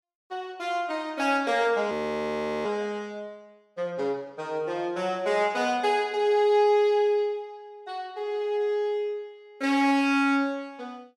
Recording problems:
audio freezing; at 2 s for 0.5 s

